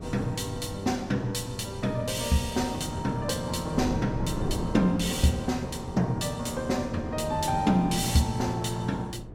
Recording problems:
wind on the microphone; below 290 Hz, SNR 11 dB

